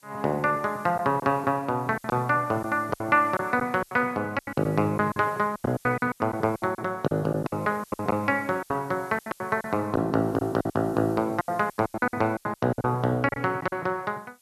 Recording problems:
hiss; slope +2 dB per octave, SNR 27 dB
packet loss; 15% of the sound replaced, filled with silence

